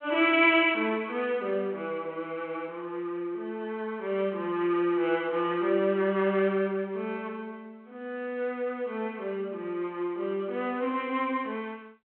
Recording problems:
telephone audio; 240 Hz to 3.3 kHz, G.726

